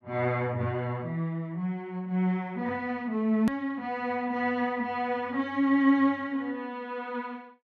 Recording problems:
edit click; at 3.5 s

